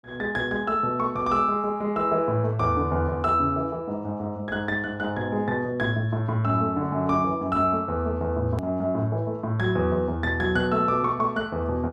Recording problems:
click at an edit; at 8.5 s

